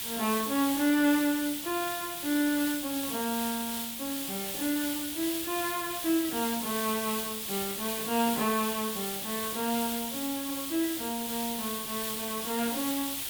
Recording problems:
hiss; SNR 2 dB

